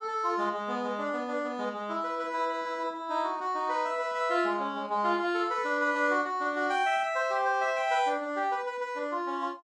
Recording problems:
none

